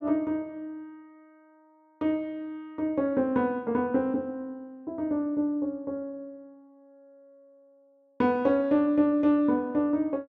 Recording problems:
none

